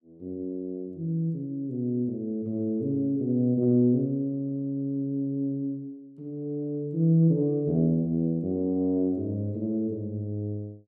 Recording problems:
none

